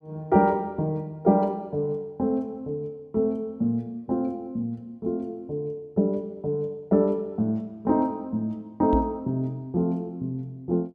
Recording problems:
knock on the microphone; at 9 s; peak +3 dB vs average level

